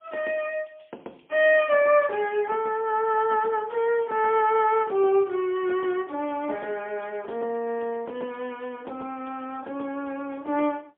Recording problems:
phone line; 300 Hz to 3.5 kHz, AMR-NB, then MP3

